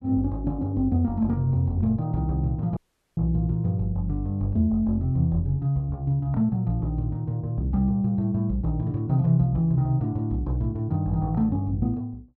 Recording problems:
dropout; at 3 s

